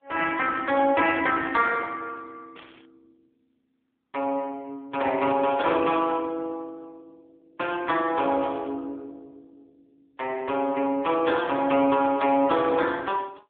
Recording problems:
telephone audio; 240 Hz to 3.5 kHz, AMR-NB
static burst; 4 times, first at 2.5 s; peak -15 dB vs average level

